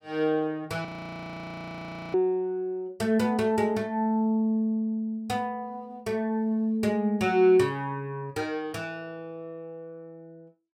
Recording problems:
frozen audio; at 1 s for 1.5 s

